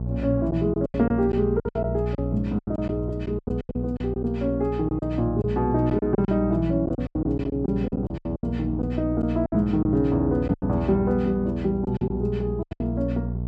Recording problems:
electrical hum; 60 Hz, harmonics up to 660 Hz, SNR 6 dB
lost packets; 13% of the sound replaced, filled with silence

